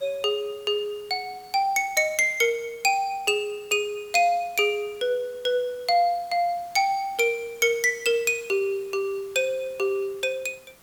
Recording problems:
hiss; slope -3 dB per octave, SNR 27 dB

